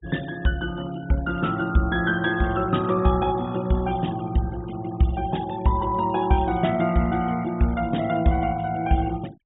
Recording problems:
treble missing; nothing above 4 kHz
noise reduction artefacts; signal-to-artefact ratio 20 dB

